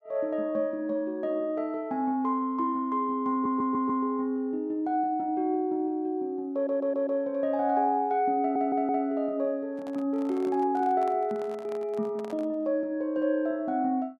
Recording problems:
stutter; at 3.5 s, at 6.5 s and at 8.5 s
microphone handling noise; from 9.5 to 13 s; peak -11 dB vs average level

